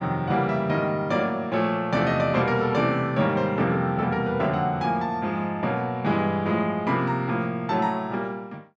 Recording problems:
none

